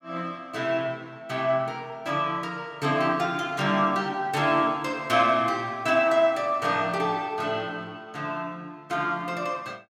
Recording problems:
none

